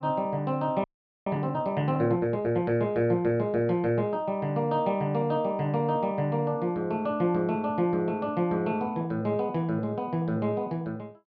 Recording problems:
audio freezing; at 1 s

